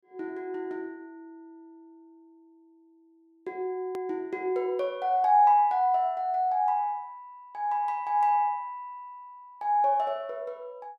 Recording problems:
edit click; at 4 s

